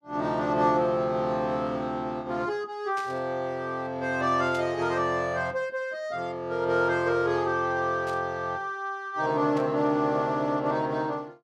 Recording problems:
static burst; 4 times, first at 3 s; peak -11 dB vs average level

